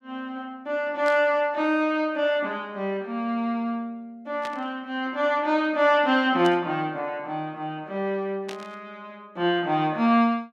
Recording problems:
burst of static; 4 times, first at 1 s; peak -8 dB vs average level

